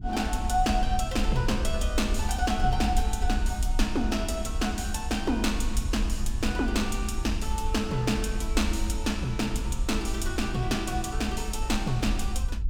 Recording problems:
electrical hum; 60 Hz, harmonics up to 360 Hz, SNR 15 dB
low-frequency rumble; below 58 Hz, SNR 4 dB

